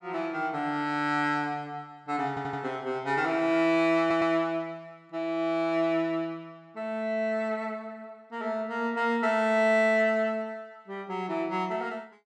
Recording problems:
audio stuttering; at 2.5 s and at 4 s

